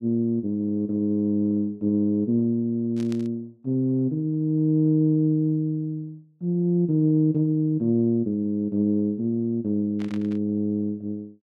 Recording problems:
static burst; at 3 s and at 10 s; peak -15 dB vs average level

